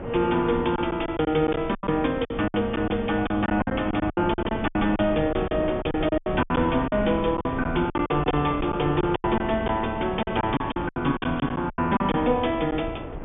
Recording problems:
treble missing; nothing above 3.4 kHz
wind noise; below 530 Hz, SNR 10 dB
lost packets; 14% of the sound replaced, filled with silence

